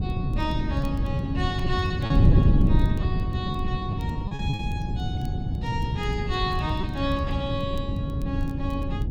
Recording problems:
wind noise; below 160 Hz, SNR -5 dB
crackle; vinyl, SNR 27 dB
packet loss; 6% of the sound replaced, filled with repeated pitch periods

